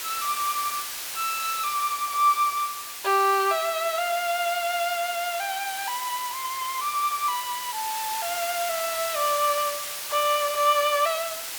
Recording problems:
background hiss; slope +2 dB per octave, SNR 6 dB

